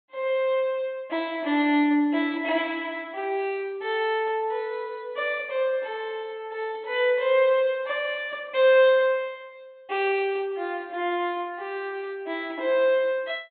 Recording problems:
low-pass filter; nothing above 4 kHz

